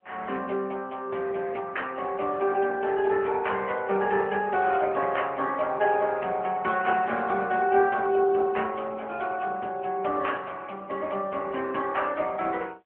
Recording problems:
telephone audio; 260 Hz to 3.1 kHz, AMR-NB

